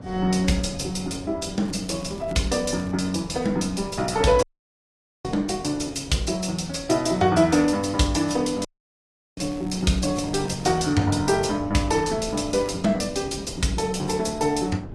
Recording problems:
lossy compression; AAC, log-spectral distance 3 dB
wind on the microphone; below 310 Hz, SNR 16 dB
crackling; from 1.5 to 3 s, from 9.5 to 11 s and at 12 s; loose cable, SNR 26 dB
audio cutting out; at 4.5 s for 1 s and at 8.5 s for 0.5 s

